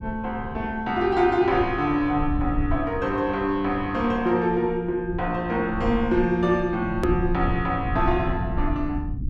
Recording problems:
low-frequency rumble; below 110 Hz, SNR 9 dB
click at an edit; at 7 s

